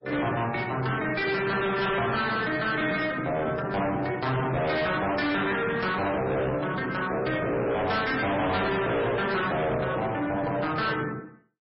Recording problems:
lossy codec; MP3, log-spectral distance 4 dB, nothing above 5.3 kHz
distorted audio; hard clipping, uneven, signal-to-distortion ratio 6 dB

